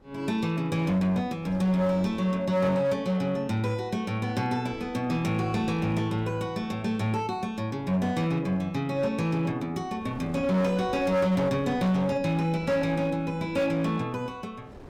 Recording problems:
distorted audio; hard clipping, signal-to-distortion ratio 12 dB
wind noise; below 530 Hz, SNR 21 dB

